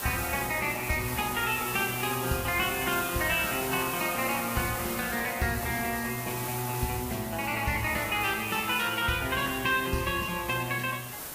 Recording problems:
lossy codec; Vorbis, log-spectral distance 13 dB, nothing above 14.7 kHz
hiss; slope -3 dB per octave, SNR 7 dB

